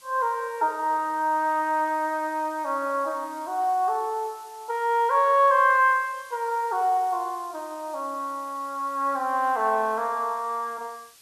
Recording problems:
hiss; slope +2 dB per octave, SNR 25 dB

